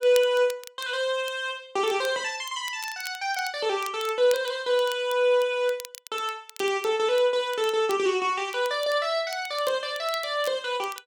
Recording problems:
crackling; vinyl, SNR 18 dB

